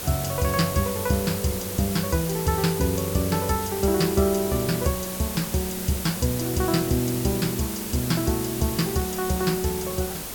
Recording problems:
hiss; slope -3 dB per octave, SNR 6 dB

